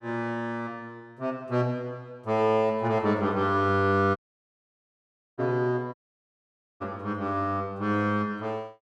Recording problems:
audio cutting out; at 4 s for 1 s and at 6 s for 1 s

